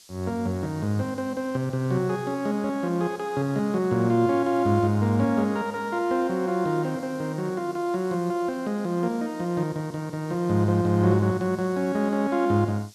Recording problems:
hiss; SNR 24 dB

